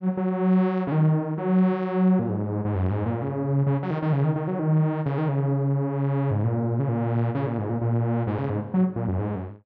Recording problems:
none

